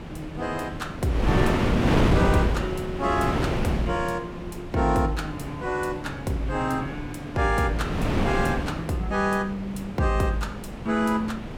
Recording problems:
wind noise; below 540 Hz, SNR 2 dB

